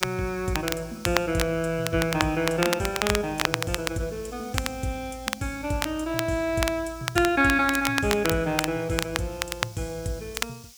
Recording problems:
hiss; SNR 21 dB
crackling; vinyl, SNR 4 dB

